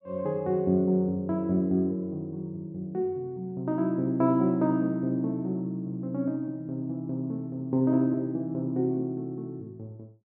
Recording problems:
none

